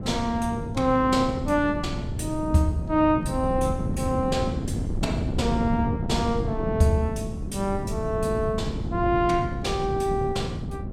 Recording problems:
wind noise; below 220 Hz, SNR 5 dB

